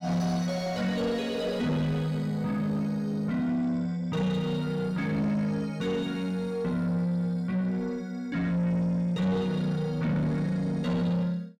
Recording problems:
distortion; soft clipping, signal-to-distortion ratio 8 dB

